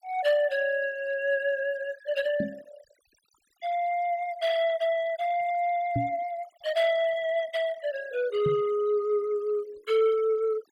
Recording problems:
denoising artefacts; signal-to-artefact ratio 20 dB
microphone thump; at 2.5 s, at 6 s and at 8.5 s; peak +1 dB vs average level

